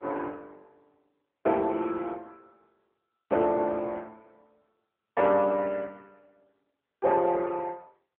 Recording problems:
telephone audio; 260 Hz to 3.4 kHz, AMR-NB

